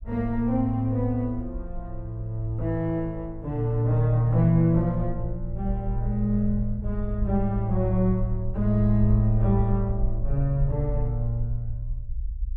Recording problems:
rumble; below 56 Hz, SNR 8 dB

